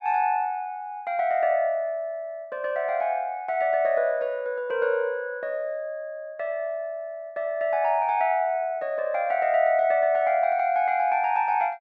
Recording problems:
none

